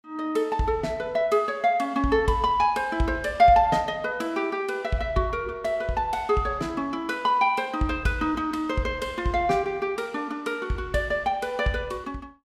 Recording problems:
none

